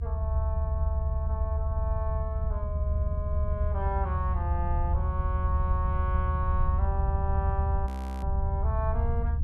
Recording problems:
low-frequency rumble; below 78 Hz, SNR -7 dB
audio freezing; at 8 s

